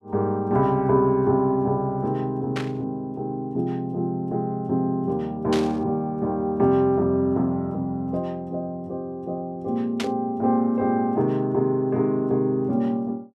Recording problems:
burst of static; at 2.5 s, at 5.5 s and at 10 s; peak -2 dB vs average level

